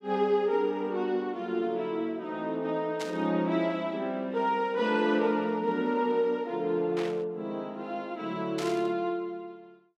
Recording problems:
static burst; at 3 s, at 7 s and at 8.5 s; peak -5 dB vs average level

